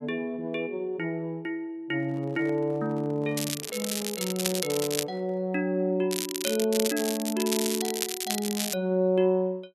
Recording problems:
handling noise; from 2 to 5.5 s; peak -12 dB vs average level
crackle; from 3.5 to 5 s and from 6 to 8.5 s; loose cable, SNR 3 dB

